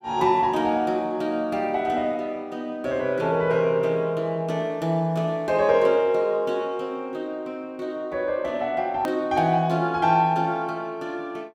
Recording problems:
hard cut with a click; at 9 s

